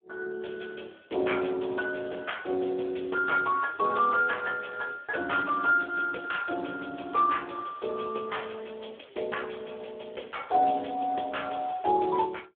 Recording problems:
telephone audio; 280 Hz to 3.4 kHz, Speex

